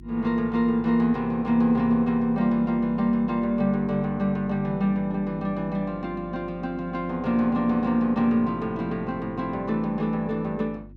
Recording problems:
electrical hum; 50 Hz, harmonics up to 350 Hz, SNR 21 dB

